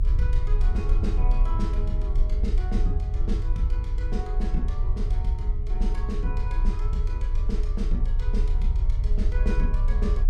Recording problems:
rumble; below 50 Hz, strongest tone 30 Hz, SNR -9 dB

